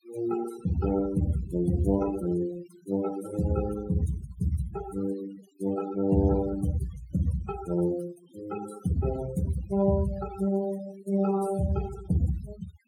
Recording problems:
noise reduction artefacts; signal-to-artefact ratio 14 dB

